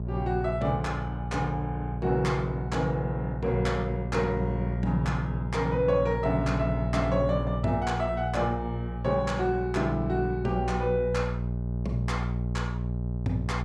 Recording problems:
electrical hum; 60 Hz, harmonics up to 660 Hz, SNR 3 dB

